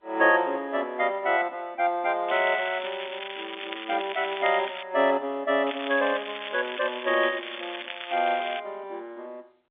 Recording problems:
phone line; 240 Hz to 3.6 kHz, G.711
crackling; from 2.5 to 5 s and from 5.5 to 8.5 s; loose cable, SNR 10 dB

